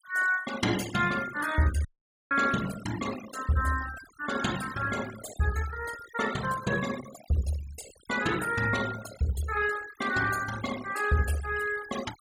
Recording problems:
noise reduction artefacts; signal-to-artefact ratio 12 dB
dropout; at 2 s

